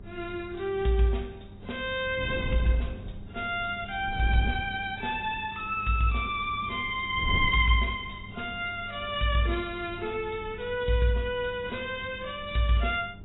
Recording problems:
lossy compression; AAC, log-spectral distance 5 dB, nothing above 3.2 kHz
hum; 50 Hz, harmonics up to 800 Hz, SNR 20 dB
wind on the microphone; below 140 Hz, SNR 13 dB

